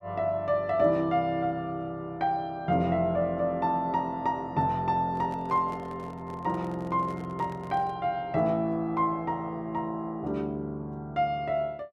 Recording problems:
handling noise; from 5 to 8 s; peak -11 dB vs average level

